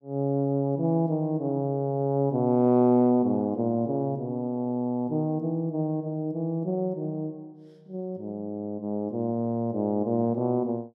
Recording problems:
none

